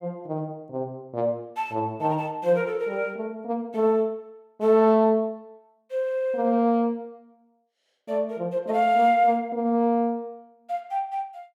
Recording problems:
none

